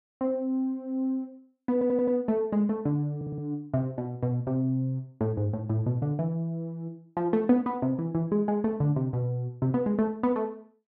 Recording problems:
stutter; at 1.5 s and at 3 s

